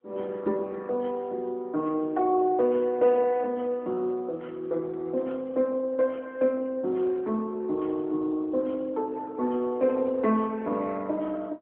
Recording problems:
phone line; 190 Hz to 3.9 kHz, AMR-NB

